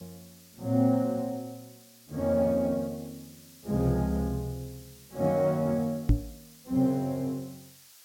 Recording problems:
hiss; slope +3 dB per octave, SNR 23 dB
knock on the microphone; at 6 s; peak +9 dB vs average level

